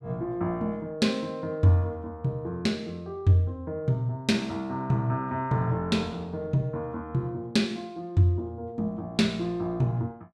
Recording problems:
none

